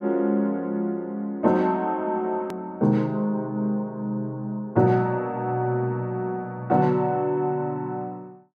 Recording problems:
hard cut with a click; at 2.5 s

